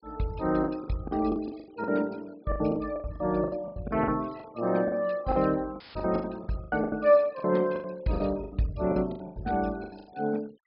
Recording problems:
treble cut off; nothing above 5.5 kHz
noise reduction artefacts; signal-to-artefact ratio 24 dB
lost packets; 18% of the sound replaced, filled with the last packet
dropout; at 6 s; filled with static

